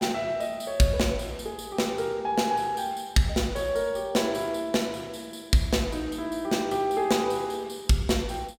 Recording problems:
none

